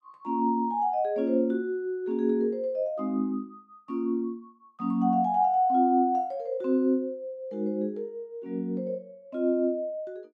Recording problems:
none

